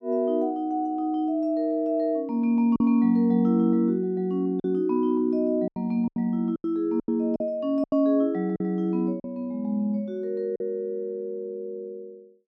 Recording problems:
packet loss; 5% of the sound replaced, filled with silence

